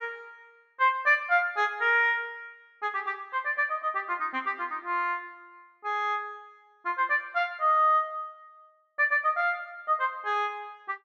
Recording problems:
none

